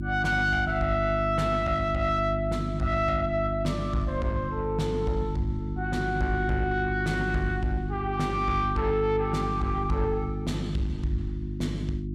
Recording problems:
distortion; soft clipping, signal-to-distortion ratio 11 dB
mains hum; 50 Hz, harmonics up to 350 Hz, SNR 4 dB

